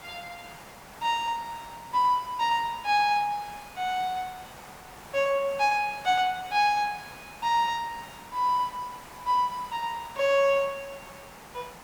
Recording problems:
hiss; SNR 18 dB

